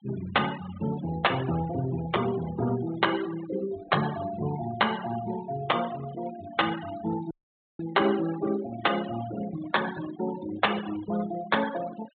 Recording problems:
treble missing; nothing above 4 kHz
denoising artefacts; signal-to-artefact ratio 12 dB
audio cutting out; at 7.5 s

